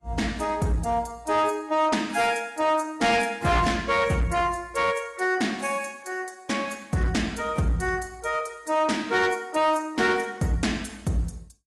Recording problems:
lossy codec; AAC, log-spectral distance 4 dB, nothing above 11.3 kHz
distortion; hard clipping, signal-to-distortion ratio 12 dB

